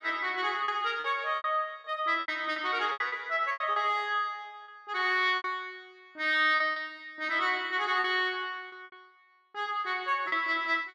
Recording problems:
packet loss; 10% of the sound replaced, filled with repeated pitch periods

